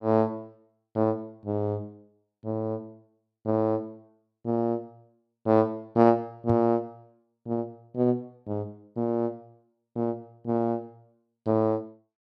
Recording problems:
microphone bump; at 6.5 s; peak +1 dB vs average level

